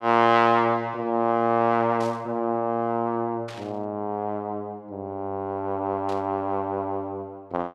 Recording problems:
burst of static; at 2 s, at 3.5 s and at 6 s; peak -12 dB vs average level

